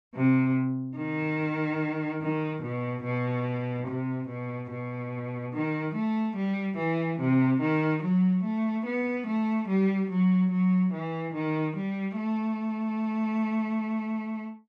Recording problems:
none

